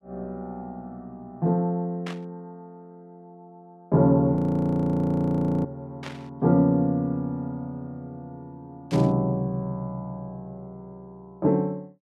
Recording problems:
burst of static; at 2 s, at 6 s and at 9 s; peak -8 dB vs average level
frozen audio; at 4.5 s for 1.5 s

